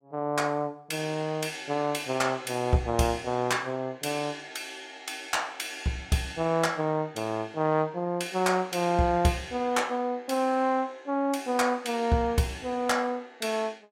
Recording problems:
none

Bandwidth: 16 kHz